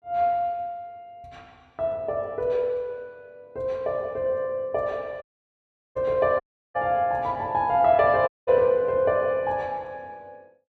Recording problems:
dropout; at 5 s for 0.5 s, at 6.5 s and at 8.5 s

